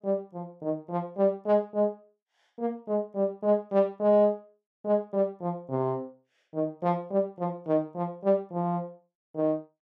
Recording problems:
none

